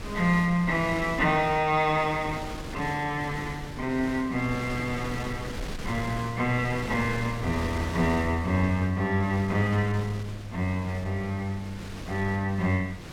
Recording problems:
wind on the microphone; below 1 kHz, SNR 11 dB

